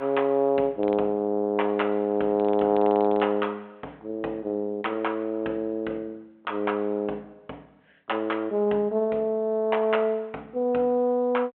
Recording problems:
phone line; 260 Hz to 3.3 kHz, G.726

